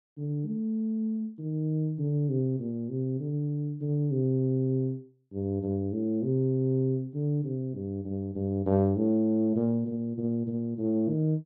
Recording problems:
none

